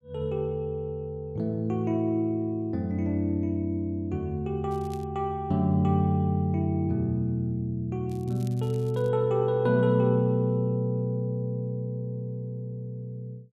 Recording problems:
crackle; at 4.5 s and at 8 s; loose cable, SNR 27 dB

